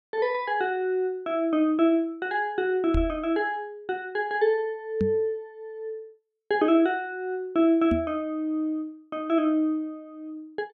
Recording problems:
microphone bump; at 3 s, at 5 s and at 8 s; peak +2 dB vs average level

